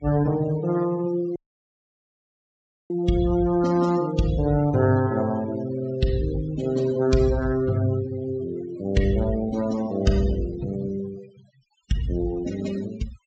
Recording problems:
treble missing; nothing above 8 kHz
denoising artefacts; signal-to-artefact ratio 17 dB
dropout; at 1.5 s for 1.5 s

